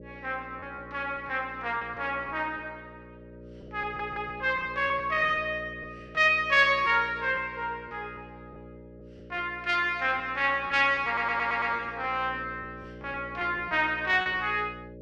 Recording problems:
hum; 60 Hz, harmonics up to 600 Hz, SNR 19 dB
packet loss; 5% of the sound replaced, filled with repeated pitch periods
stutter; at 4 s and at 11 s

